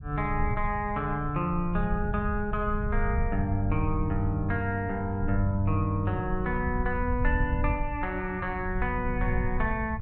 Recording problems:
low-frequency rumble; below 90 Hz, SNR 4 dB

